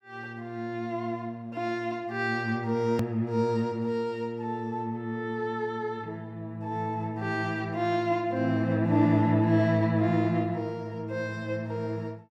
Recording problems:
hard cut with a click; at 3 s

